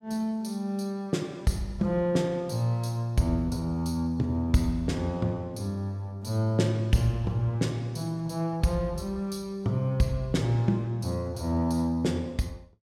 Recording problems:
none

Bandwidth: 16 kHz